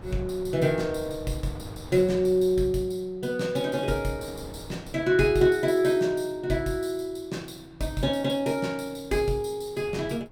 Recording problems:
wind on the microphone; below 390 Hz, SNR 20 dB

